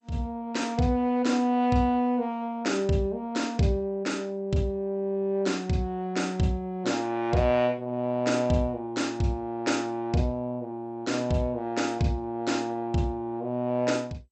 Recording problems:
lossy codec; MP2, log-spectral distance 2 dB, nothing above 8.2 kHz

